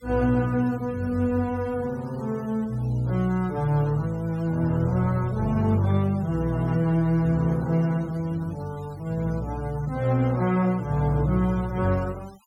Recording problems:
noise reduction artefacts; signal-to-artefact ratio 26 dB

